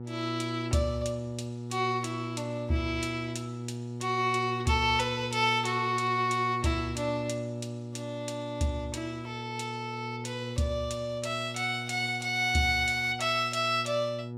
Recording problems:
mains hum; 60 Hz, harmonics up to 840 Hz, SNR 9 dB

